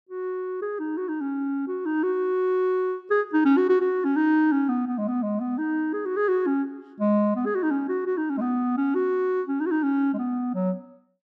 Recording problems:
none

